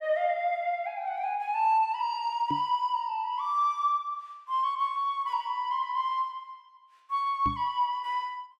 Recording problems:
knock on the microphone; at 2.5 s and at 7.5 s; peak -2 dB vs average level

